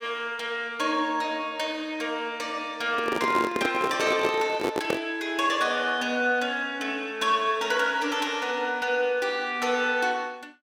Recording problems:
microphone handling noise; from 3 to 5 s; peak +3 dB vs average level

